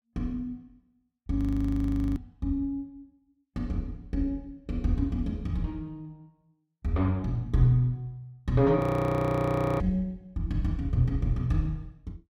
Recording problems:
frozen audio; at 1.5 s for 1 s and at 9 s for 1 s

